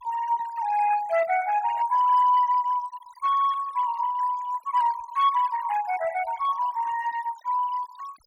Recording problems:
noise reduction artefacts; signal-to-artefact ratio 17 dB

